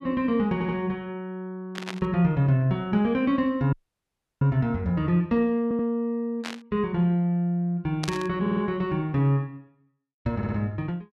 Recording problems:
audio stuttering; 4 times, first at 0.5 s
burst of static; at 1.5 s, at 6.5 s and at 8 s; peak -2 dB vs average level
dropout; at 3.5 s for 0.5 s

